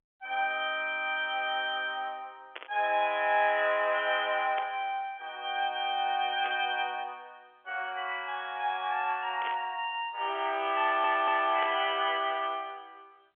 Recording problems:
phone line; 320 Hz to 3.5 kHz, G.711
static burst; 5 times, first at 2.5 s; peak -3 dB vs average level
stutter; at 11 s

